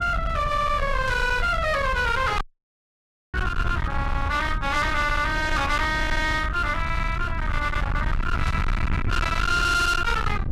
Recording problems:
distortion; hard clipping, signal-to-distortion ratio 6 dB
low-frequency rumble; below 320 Hz, SNR 5 dB
burst of static; at 1 s and at 8.5 s; peak -11 dB vs average level
dropout; at 2.5 s for 1 s

